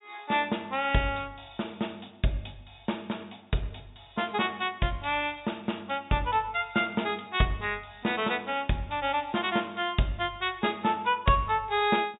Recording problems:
treble missing; nothing above 4 kHz

